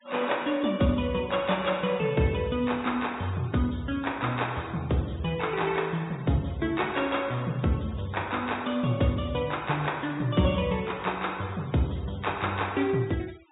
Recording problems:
low-pass filter; nothing above 4 kHz
noise reduction artefacts; signal-to-artefact ratio 22 dB

